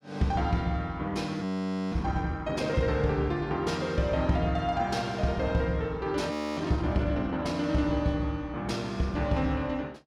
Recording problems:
frozen audio; at 1.5 s and at 6.5 s

